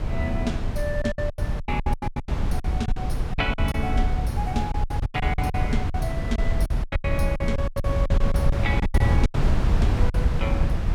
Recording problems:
wind noise; below 100 Hz, SNR -5 dB
lost packets; 17% of the sound replaced, filled with silence

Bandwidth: 17.5 kHz